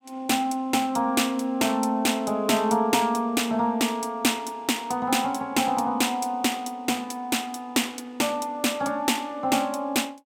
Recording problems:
none

